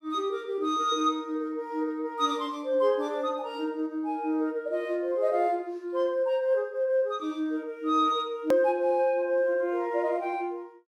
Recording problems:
click at an edit; at 8.5 s

